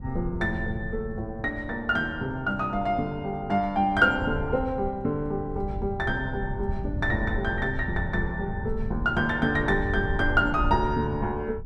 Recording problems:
wind noise; below 110 Hz, SNR 8 dB

